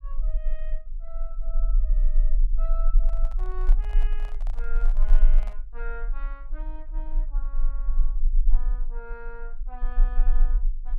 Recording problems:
low-frequency rumble; below 32 Hz, strongest tone 20 Hz, SNR -17 dB
microphone handling noise; from 3 to 5.5 s; peak +3 dB vs average level

